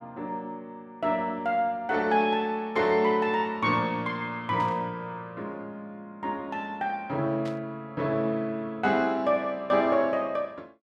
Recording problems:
burst of static; at 4.5 s and at 7.5 s; peak -13 dB vs average level

